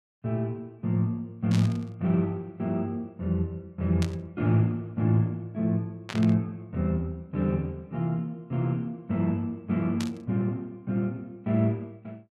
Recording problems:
static burst; 4 times, first at 1.5 s; peak -4 dB vs average level

